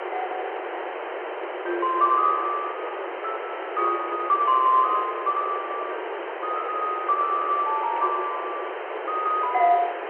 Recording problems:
phone line; 300 Hz to 3.7 kHz, G.711
background hiss; SNR 7 dB
static burst; at 8 s; peak -14 dB vs average level

